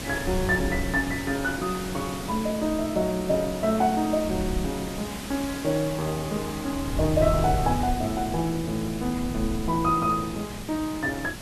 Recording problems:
hum; 60 Hz, harmonics up to 600 Hz, SNR 20 dB
background hiss; slope -3 dB per octave, SNR 11 dB
wind on the microphone; below 110 Hz, SNR 10 dB

